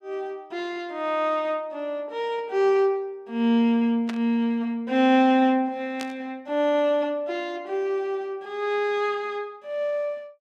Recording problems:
static burst; at 4 s and at 6 s; peak -6 dB vs average level

